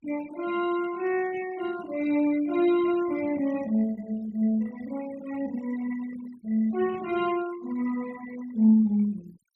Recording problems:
denoising artefacts; signal-to-artefact ratio 20 dB

